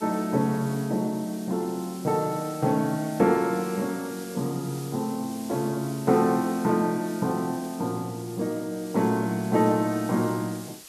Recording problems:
hiss; slope +1 dB per octave, SNR 17 dB

